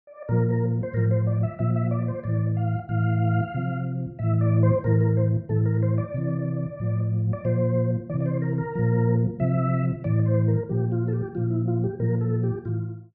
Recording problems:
low-pass filter; nothing above 7.9 kHz

